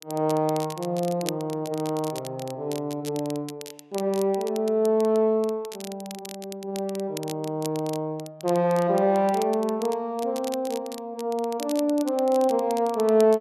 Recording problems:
crackle; vinyl, SNR 16 dB

